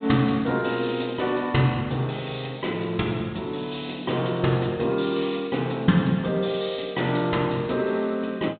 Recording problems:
low-pass filter; nothing above 4 kHz

